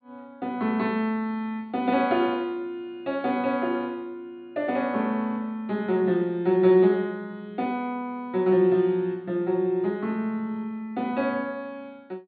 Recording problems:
treble missing; nothing above 4.5 kHz

